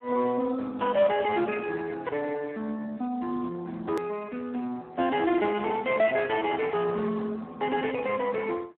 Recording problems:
phone line; 240 Hz to 2.9 kHz, Speex
click at an edit; at 4 s

